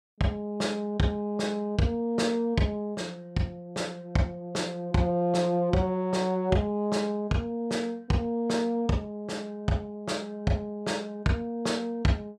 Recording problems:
none

